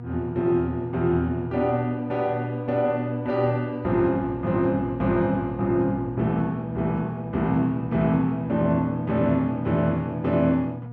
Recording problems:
hum; 60 Hz, harmonics up to 960 Hz, SNR 10 dB

